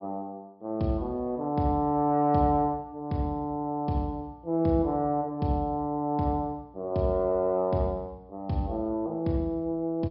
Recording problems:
treble missing; nothing above 5.5 kHz

